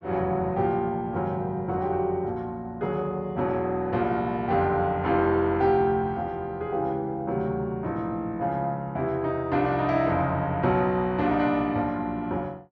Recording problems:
low-pass filter; nothing above 8 kHz

